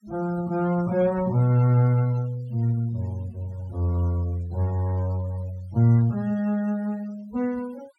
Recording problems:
noise reduction artefacts; signal-to-artefact ratio 24 dB

